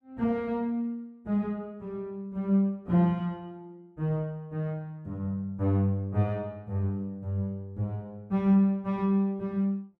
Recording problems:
none

